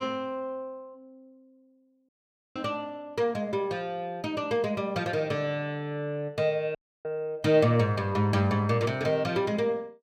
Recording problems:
dropout; at 2 s and at 7 s

